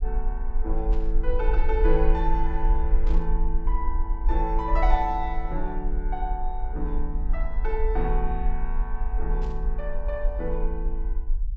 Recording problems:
low-pass filter; nothing above 7.7 kHz
low-frequency rumble; below 42 Hz, strongest tone 20 Hz, SNR -3 dB
burst of static; at 1 s, at 3 s and at 9.5 s; peak -14 dB vs average level

